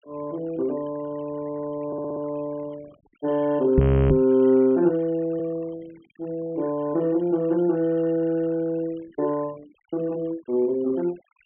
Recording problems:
low-pass filter; nothing above 3.2 kHz
noise reduction artefacts; signal-to-artefact ratio 27 dB
audio stuttering; at 2 s
knock on the microphone; at 4 s; peak +8 dB vs average level
audio freezing; at 4 s

